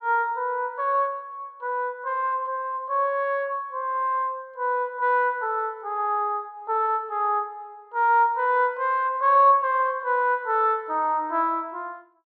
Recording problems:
none

